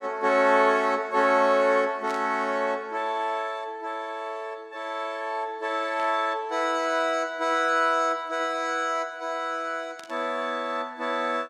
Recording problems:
burst of static; at 2 s, at 6 s and at 10 s; peak -13 dB vs average level

